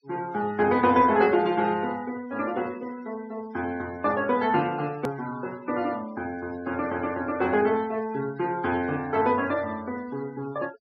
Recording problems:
treble cut off; nothing above 5.8 kHz
denoising artefacts; signal-to-artefact ratio 21 dB
hard cut with a click; at 5 s

